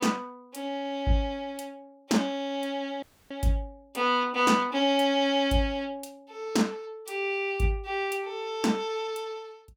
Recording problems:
audio cutting out; at 3 s

